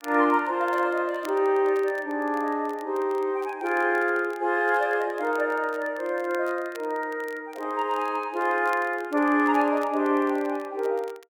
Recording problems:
crackle; vinyl, SNR 26 dB

